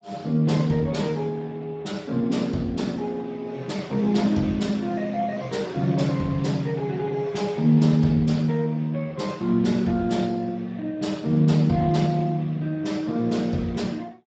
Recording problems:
lossy codec; Speex, log-spectral distance 3 dB, nothing above 7.3 kHz

